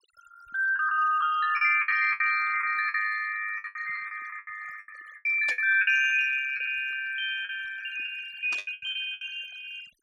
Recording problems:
denoising artefacts; signal-to-artefact ratio 17 dB
packet loss; 13% of the sound replaced, filled with the last packet
burst of static; at 5.5 s and at 8.5 s; peak -7 dB vs average level

